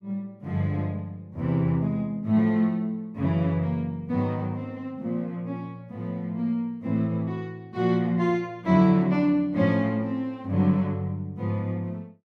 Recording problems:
none

